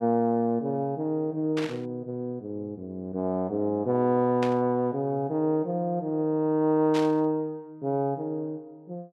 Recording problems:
static burst; at 1.5 s, at 4.5 s and at 7 s; peak -4 dB vs average level

